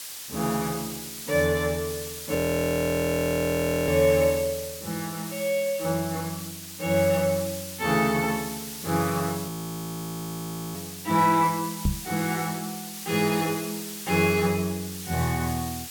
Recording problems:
hiss; slope +3 dB per octave, SNR 10 dB
frozen audio; at 2.5 s for 1.5 s and at 9.5 s for 1.5 s
knock on the microphone; at 12 s; peak +5 dB vs average level

